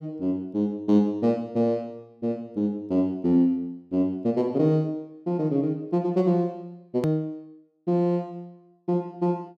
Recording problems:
edit click; at 7 s

